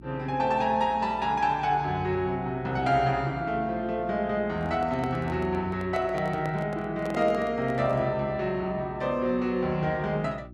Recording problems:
hum; 60 Hz, harmonics up to 360 Hz, SNR 20 dB
microphone handling noise; from 4.5 to 8 s; peak -6 dB vs average level

